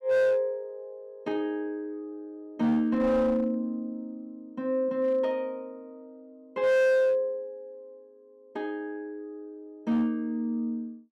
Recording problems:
distortion; hard clipping, uneven, signal-to-distortion ratio 11 dB

